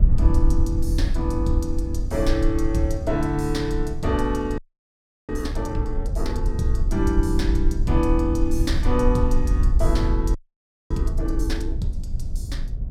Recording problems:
hum; 60 Hz, harmonics up to 720 Hz, SNR 23 dB
low-frequency rumble; below 66 Hz, SNR -1 dB
audio freezing; at 4.5 s for 0.5 s and at 10 s for 0.5 s

